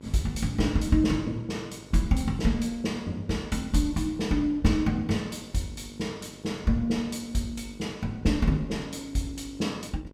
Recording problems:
hum; 50 Hz, harmonics up to 1.6 kHz, SNR 21 dB

